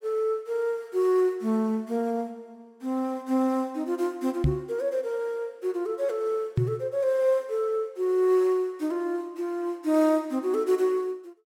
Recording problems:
microphone thump; at 4.5 s and at 6.5 s; peak +6 dB vs average level

